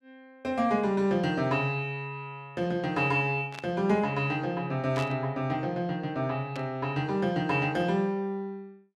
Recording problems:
burst of static; at 3.5 s, at 5 s and at 6.5 s; peak -7 dB vs average level

